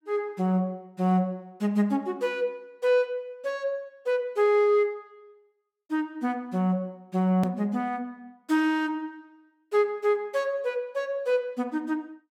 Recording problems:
hard cut with a click; at 7.5 s

